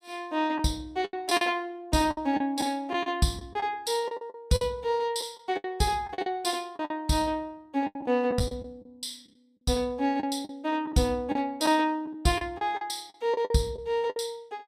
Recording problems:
packet loss; 10% of the sound replaced, filled with the last packet

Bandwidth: 15.5 kHz